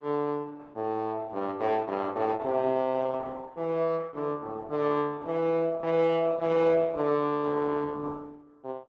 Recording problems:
lossy compression; Opus, log-spectral distance 2 dB

